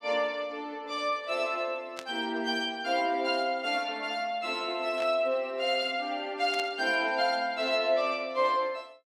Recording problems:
static burst; at 2 s, at 5 s and at 6.5 s; peak -7 dB vs average level

